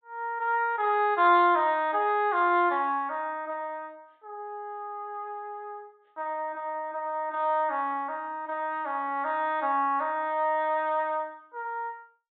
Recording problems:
treble missing; nothing above 4 kHz

